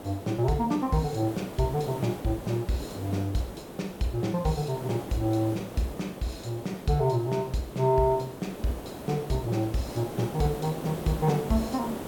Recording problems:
hiss; slope -8 dB per octave, SNR 10 dB

